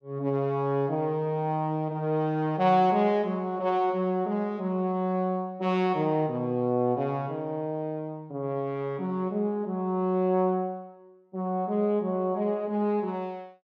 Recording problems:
none

